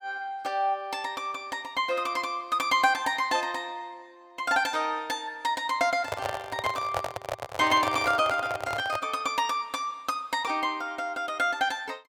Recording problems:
handling noise; from 6 to 9 s; peak +2 dB vs average level

